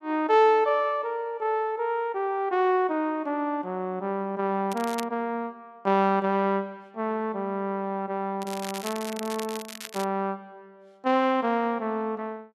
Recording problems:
crackle; at 4.5 s and from 8.5 to 10 s; loose cable, SNR 13 dB

